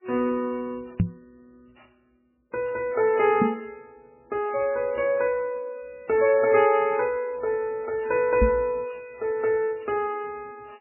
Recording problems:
lossy codec; MP3, log-spectral distance 2 dB, nothing above 2.5 kHz
knock on the microphone; at 1 s, at 3.5 s and at 8.5 s; peak +6 dB vs average level

